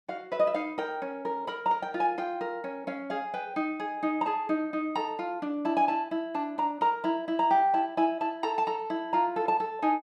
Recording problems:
none

